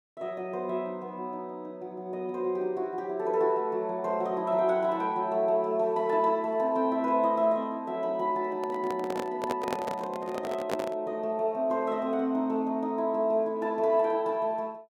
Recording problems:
microphone handling noise; from 8.5 to 11 s; peak +1 dB vs average level

